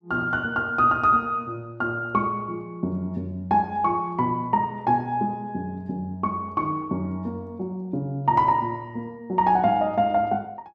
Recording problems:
none

